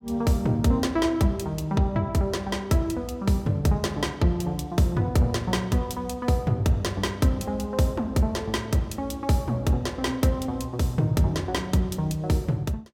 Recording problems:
none

